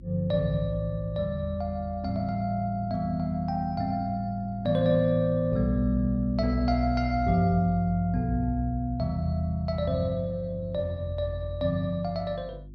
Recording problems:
mains hum; 50 Hz, harmonics up to 350 Hz, SNR 19 dB

